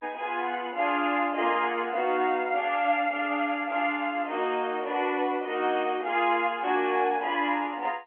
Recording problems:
phone line; 240 Hz to 3.2 kHz, G.711

